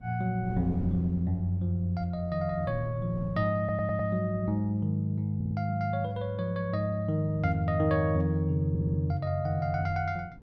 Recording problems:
wind on the microphone; below 220 Hz, SNR 16 dB
stutter; at 3.5 s, at 5.5 s and at 8.5 s

